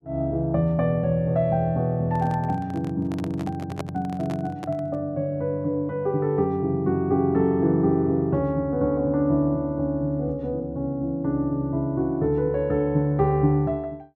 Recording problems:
microphone handling noise; from 2 to 5 s; peak -4 dB vs average level

